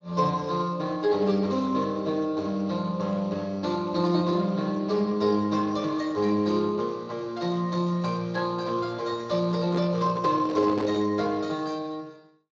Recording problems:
lossy compression; Speex, log-spectral distance 3 dB
microphone handling noise; from 9.5 to 11 s; peak 0 dB vs average level

